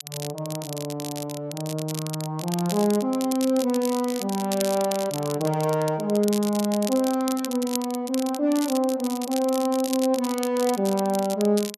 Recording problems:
crackling; vinyl, SNR 10 dB

